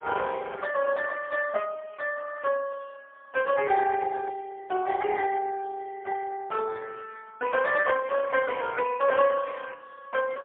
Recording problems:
phone line; 130 Hz to 2.1 kHz, AMR-NB, then MP3

